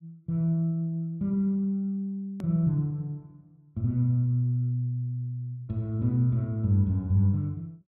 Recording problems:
hard cut with a click; at 2.5 s

